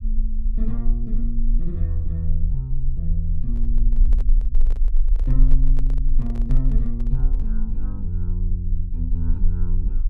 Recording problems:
low-frequency rumble; below 36 Hz, strongest tone 24 Hz, SNR -5 dB
microphone handling noise; from 3.5 to 7.5 s; peak -8 dB vs average level

